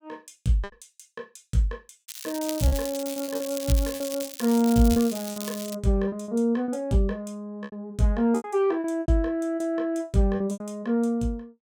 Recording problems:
lost packets; 9% of the sound replaced, filled with repeated pitch periods
crackling; from 2 to 6 s; loose cable, SNR 10 dB

